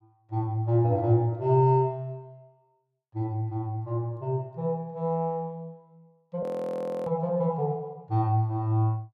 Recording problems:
audio freezing; at 6.5 s for 0.5 s

